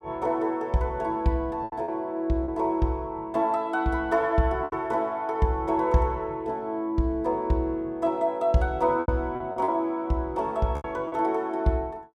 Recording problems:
lost packets; 5% of the sound replaced, filled with repeated pitch periods

